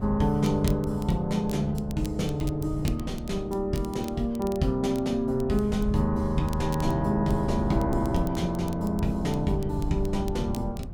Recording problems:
wind noise; below 120 Hz, SNR 9 dB
crackling; vinyl, SNR 21 dB

